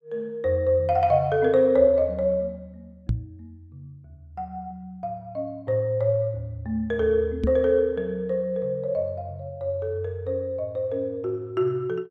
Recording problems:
microphone bump; at 3 s and at 7.5 s; peak +4 dB vs average level

